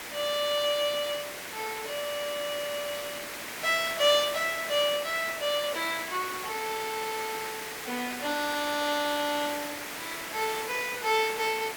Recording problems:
hiss; SNR 7 dB

